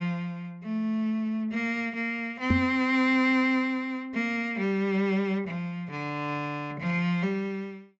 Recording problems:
low-pass filter; nothing above 8 kHz
microphone bump; at 2.5 s; peak +7 dB vs average level

